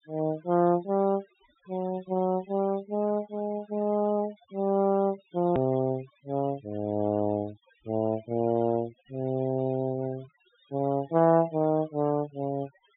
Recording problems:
low-pass filter; nothing above 4 kHz
denoising artefacts; signal-to-artefact ratio 23 dB
click at an edit; at 5.5 s

